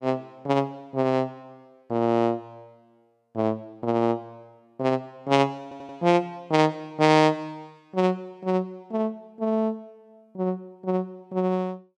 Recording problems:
stutter; at 5.5 s

